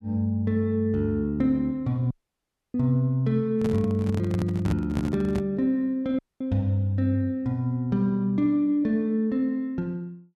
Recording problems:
audio cutting out; at 2 s for 0.5 s and at 6 s
microphone handling noise; from 3.5 to 5.5 s; peak -1 dB vs average level

